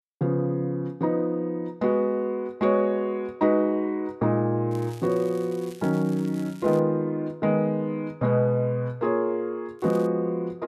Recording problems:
crackle; from 4.5 to 7 s and at 10 s; loose cable, SNR 25 dB

